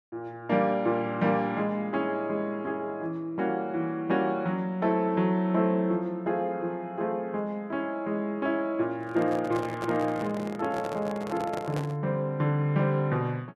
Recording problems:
handling noise; from 9 to 12 s; peak -3 dB vs average level

